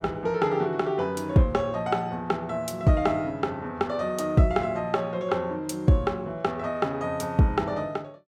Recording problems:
none

